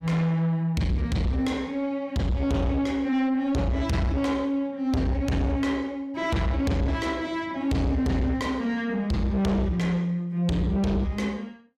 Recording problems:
distorted audio; soft clipping, signal-to-distortion ratio 7 dB

